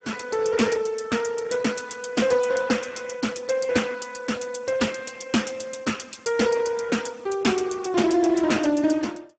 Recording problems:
codec artefacts; Speex, log-spectral distance 6 dB, nothing above 7.8 kHz

